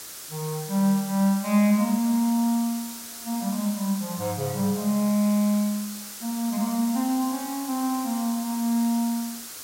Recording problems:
background hiss; slope +1 dB per octave, SNR 11 dB

